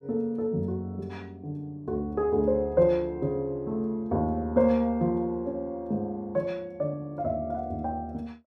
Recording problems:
none

